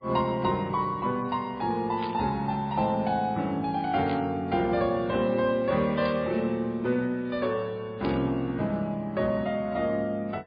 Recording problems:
codec artefacts; MP3, log-spectral distance 2 dB, nothing above 4.2 kHz
static burst; 4 times, first at 2 s; peak -7 dB vs average level

